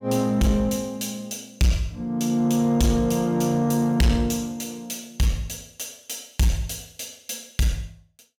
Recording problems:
distorted audio; soft clipping, signal-to-distortion ratio 10 dB

